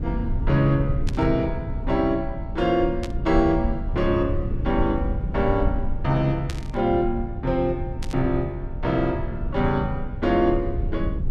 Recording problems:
low-frequency rumble; below 98 Hz, SNR 6 dB
static burst; 4 times, first at 1 s; peak -7 dB vs average level

